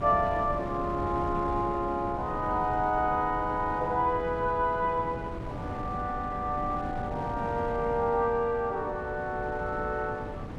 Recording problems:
wind noise; below 420 Hz, SNR 9 dB

